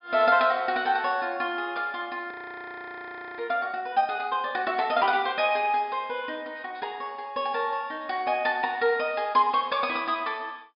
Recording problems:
treble missing; nothing above 5.1 kHz
audio freezing; at 2.5 s for 1 s

